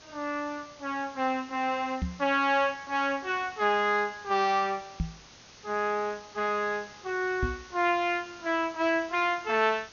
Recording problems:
treble missing; nothing above 6.7 kHz
background hiss; slope -1 dB per octave, SNR 21 dB
knock on the microphone; at 2 s, at 5 s and at 7.5 s; peak +1 dB vs average level

